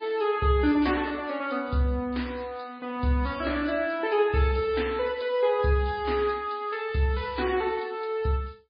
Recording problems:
codec artefacts; MP3, log-spectral distance 3 dB, nothing above 4.1 kHz

